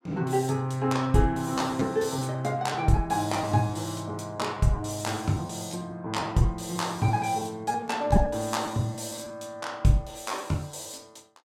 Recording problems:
packet loss; 7% of the sound replaced, filled with repeated pitch periods

